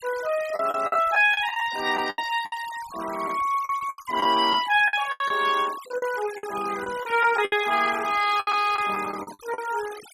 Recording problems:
noise reduction artefacts; signal-to-artefact ratio 16 dB
packet loss; 12% of the sound replaced, filled with the last packet

